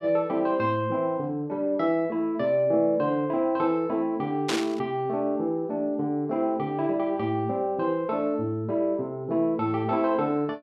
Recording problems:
burst of static; at 4.5 s; peak +1 dB vs average level

